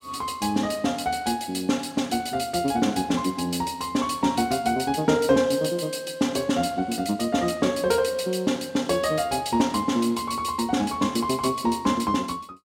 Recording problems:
none

